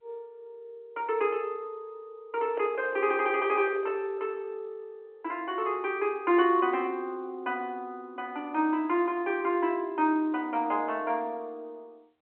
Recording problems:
phone line; 280 Hz to 3.1 kHz, G.711
microphone handling noise; from 2.5 to 4 s; peak -6 dB vs average level

